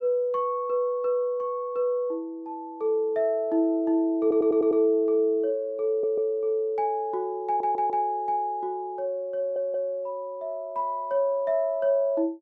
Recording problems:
audio stuttering; 4 times, first at 4 s

